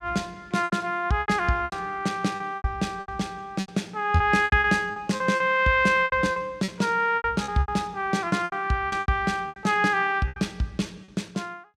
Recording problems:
lost packets; 14% of the sound replaced, filled with repeated pitch periods

